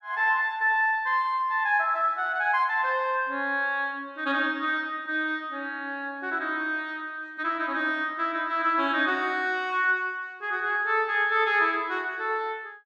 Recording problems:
none

